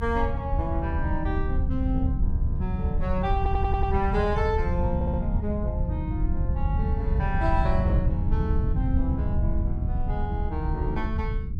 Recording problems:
rumble; below 94 Hz, SNR -3 dB
stutter; at 3.5 s and at 5 s

